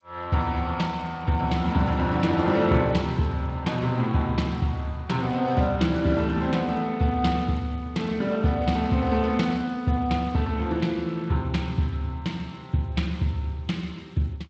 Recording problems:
codec artefacts; G.722, then Speex, log-spectral distance 3 dB

